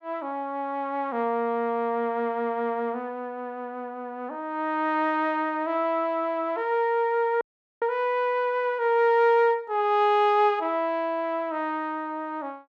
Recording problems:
dropout; at 7.5 s

